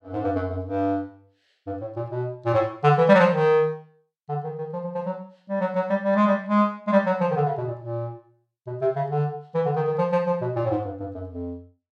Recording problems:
none

